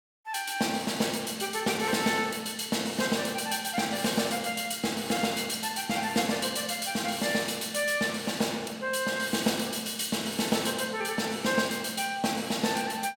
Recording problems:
none

